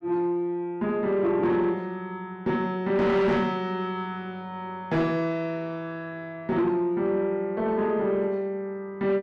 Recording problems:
distortion; soft clipping, signal-to-distortion ratio 11 dB

